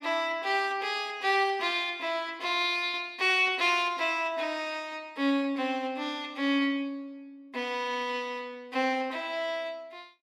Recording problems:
none

